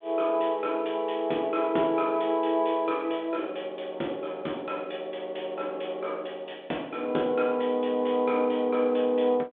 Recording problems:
telephone audio; 260 Hz to 3.8 kHz, G.726

